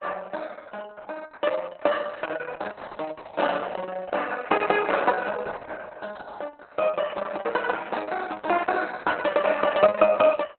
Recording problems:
codec artefacts; Opus, log-spectral distance 5 dB, nothing above 4 kHz

